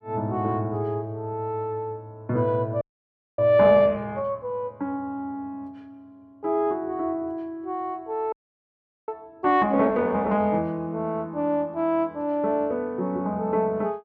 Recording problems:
frozen audio; at 3 s for 0.5 s and at 8.5 s for 1 s

